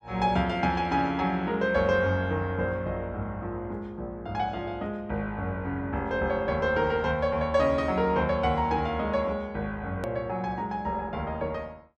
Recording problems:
hard cut with a click; at 10 s

